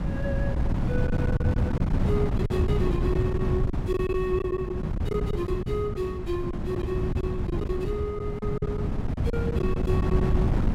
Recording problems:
wind noise; below 190 Hz, SNR -4 dB
packet loss; 9% of the sound replaced, filled with silence

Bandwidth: 16 kHz